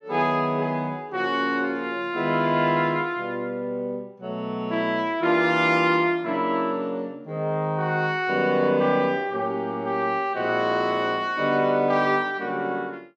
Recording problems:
none

